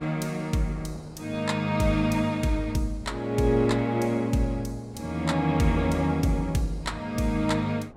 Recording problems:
wind noise; below 600 Hz, SNR 23 dB

